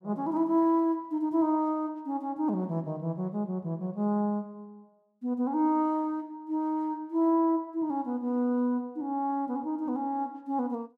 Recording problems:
none

